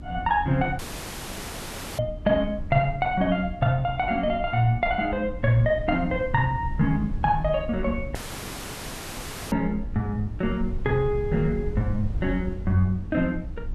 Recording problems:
electrical hum; 60 Hz, harmonics up to 300 Hz, SNR 21 dB
wind on the microphone; below 82 Hz, SNR 11 dB
audio cutting out; at 1 s for 1 s and at 8 s for 1.5 s

